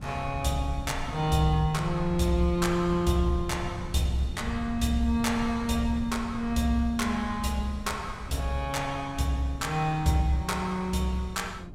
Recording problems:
rumble; below 110 Hz, SNR 12 dB
wind noise; below 270 Hz, SNR 20 dB

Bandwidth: 16 kHz